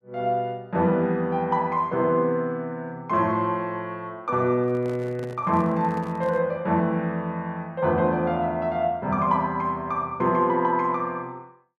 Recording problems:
handling noise; from 4.5 to 6.5 s; peak -11 dB vs average level

